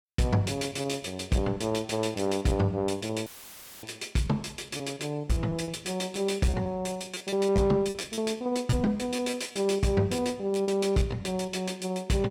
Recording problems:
distortion; soft clipping, signal-to-distortion ratio 12 dB
packet loss; 13% of the sound replaced, filled with repeated pitch periods
audio cutting out; at 3.5 s for 0.5 s; filled with static

